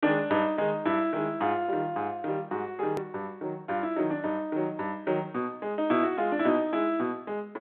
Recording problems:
phone line; 220 Hz to 3.9 kHz, G.726
hard cut with a click; at 3 s

